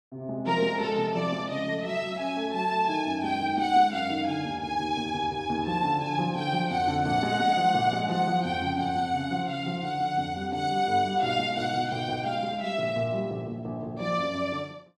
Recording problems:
none

